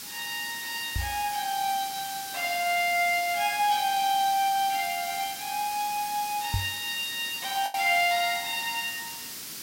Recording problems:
hiss; SNR 8 dB
packet loss; 0.9% of the sound replaced, filled with the last packet
microphone bump; at 1 s and at 6.5 s; peak +1 dB vs average level

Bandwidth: 16 kHz